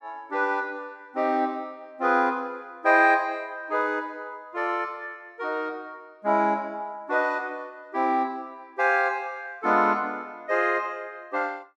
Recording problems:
none

